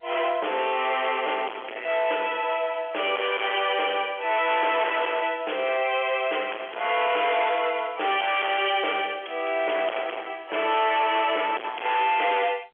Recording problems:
telephone audio; 320 Hz to 3.4 kHz, G.711
distortion; hard clipping, uneven, signal-to-distortion ratio 7 dB

